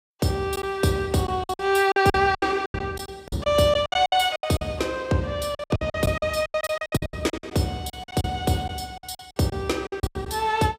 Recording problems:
packet loss; 17% of the sound replaced, filled with silence

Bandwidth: 15.5 kHz